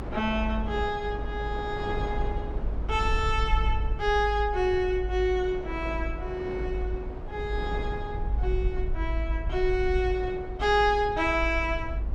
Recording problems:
rumble; below 54 Hz, strongest tone 52 Hz, SNR 5 dB
wind on the microphone; below 630 Hz, SNR 13 dB

